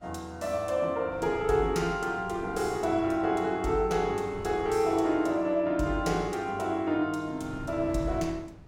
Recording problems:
wind on the microphone; below 290 Hz, SNR 18 dB

